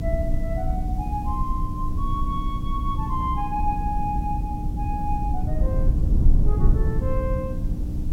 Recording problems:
hum; 60 Hz, harmonics up to 300 Hz, SNR 4 dB
hiss; slope -1 dB per octave, SNR 25 dB
rumble; below 78 Hz, SNR -4 dB

